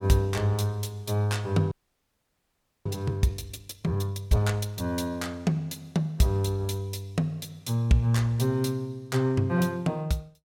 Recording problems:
frozen audio; at 1.5 s for 1 s

